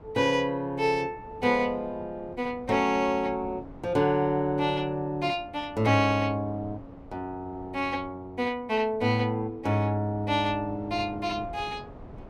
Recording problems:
wind noise; below 520 Hz, SNR 20 dB

